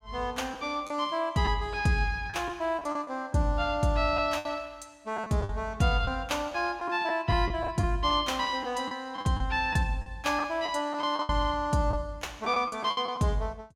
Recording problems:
lost packets; 8% of the sound replaced, filled with the last packet

